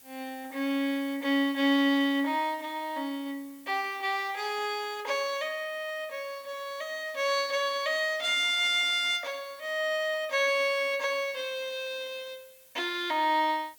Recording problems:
background hiss; SNR 24 dB

